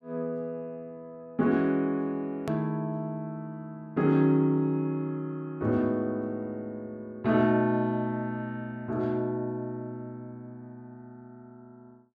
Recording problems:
edit click; at 2.5 s

